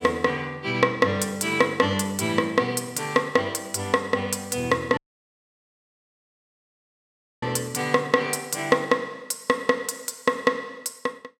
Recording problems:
dropout; at 5 s for 2.5 s

